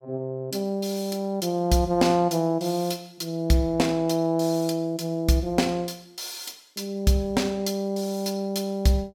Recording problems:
none

